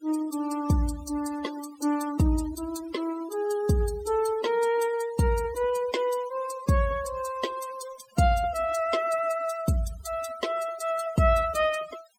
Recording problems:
denoising artefacts; signal-to-artefact ratio 17 dB

